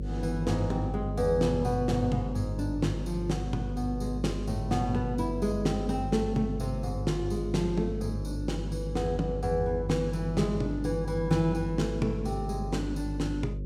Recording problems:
hum; 50 Hz, harmonics up to 550 Hz, SNR 5 dB

